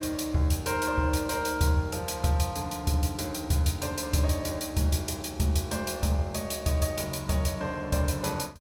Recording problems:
none

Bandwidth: 17 kHz